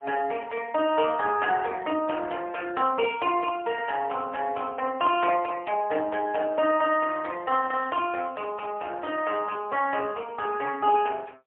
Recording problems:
phone line; 260 Hz to 3.3 kHz, AMR-NB, then MP3

